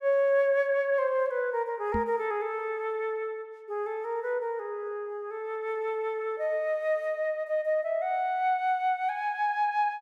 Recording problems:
knock on the microphone; at 2 s; peak -1 dB vs average level

